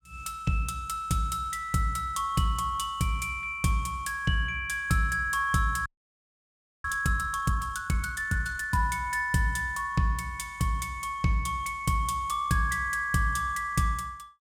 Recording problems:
audio freezing; at 6 s for 1 s

